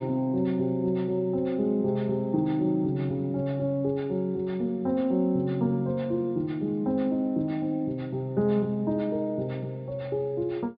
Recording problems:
treble missing; nothing above 5.1 kHz

